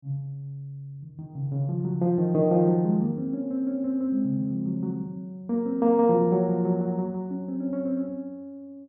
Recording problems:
none

